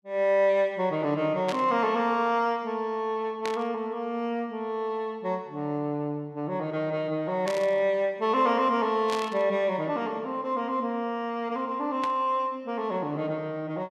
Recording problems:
static burst; 5 times, first at 1.5 s; peak -4 dB vs average level

